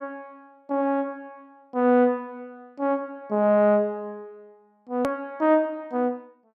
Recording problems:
hard cut with a click; at 5 s

